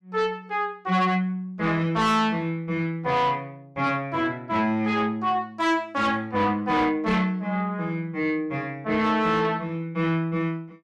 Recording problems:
distorted audio; soft clipping, signal-to-distortion ratio 11 dB

